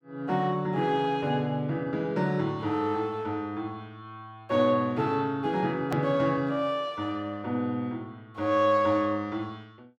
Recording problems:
edit click; at 6 s

